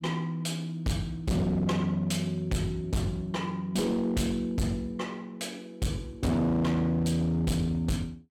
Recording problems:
distortion; hard clipping, signal-to-distortion ratio 6 dB

